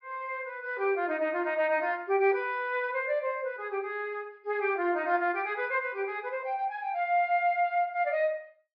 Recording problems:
low-pass filter; nothing above 5.5 kHz

